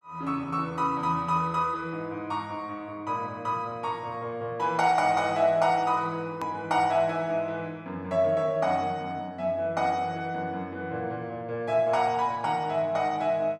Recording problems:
edit click; at 6.5 s

